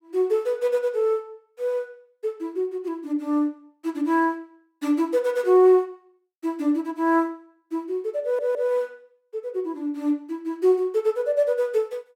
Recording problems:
audio stuttering; at 8 s

